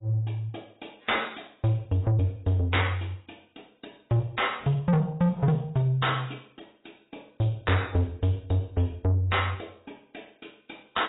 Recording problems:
codec artefacts; AAC, log-spectral distance 7 dB, nothing above 3.8 kHz
distorted audio; soft clipping, signal-to-distortion ratio 10 dB

